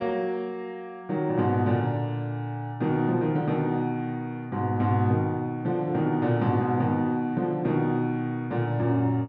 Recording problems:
none

